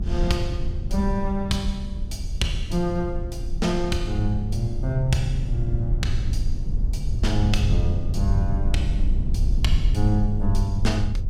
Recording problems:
low-frequency rumble; below 70 Hz, SNR 1 dB

